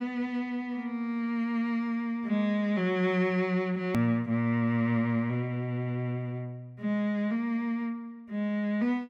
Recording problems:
hard cut with a click; at 4 s

